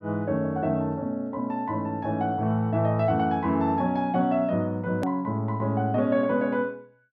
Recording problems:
edit click; at 5 s

